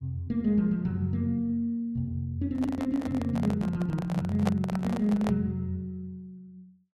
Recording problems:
handling noise; from 2.5 to 5.5 s; peak +1 dB vs average level

